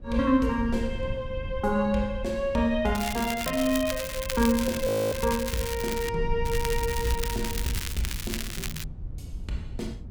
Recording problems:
rumble; below 90 Hz, SNR 10 dB
crackle; from 3 to 6 s and from 6.5 to 9 s; loose cable, SNR 7 dB
audio freezing; at 5 s

